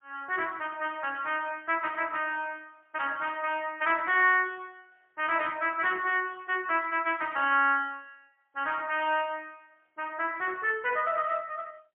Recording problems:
telephone audio; 340 Hz to 3.3 kHz, AMR-NB, then MP3

